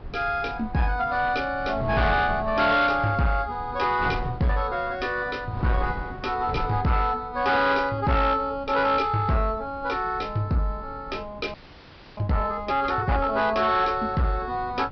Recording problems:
treble missing; nothing above 5.5 kHz
distortion; soft clipping, signal-to-distortion ratio 11 dB
wind on the microphone; below 250 Hz, SNR 14 dB
frozen audio; at 12 s for 0.5 s

